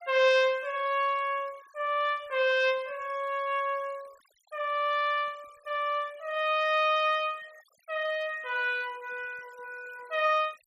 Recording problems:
denoising artefacts; signal-to-artefact ratio 26 dB

